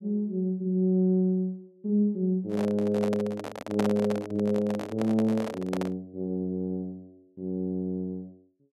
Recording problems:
handling noise; from 2.5 to 6 s; peak +2 dB vs average level

